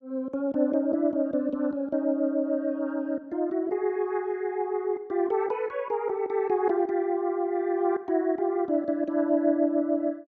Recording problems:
none

